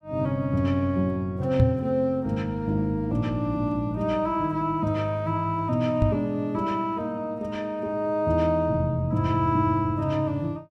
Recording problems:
microphone bump; at 1.5 s and at 6 s; peak +8 dB vs average level

